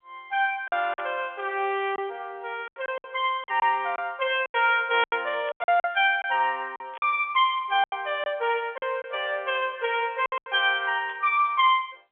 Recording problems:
phone line; 300 Hz to 3.5 kHz, G.711
packet loss; 9% of the sound replaced, filled with silence
burst of static; 4 times, first at 1 s; peak -13 dB vs average level

